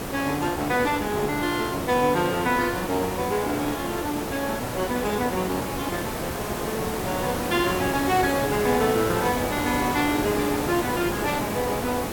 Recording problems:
background hiss; slope -6 dB per octave, SNR 4 dB

